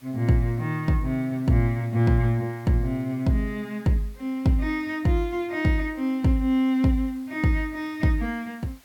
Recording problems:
hiss; slope -1 dB per octave, SNR 29 dB

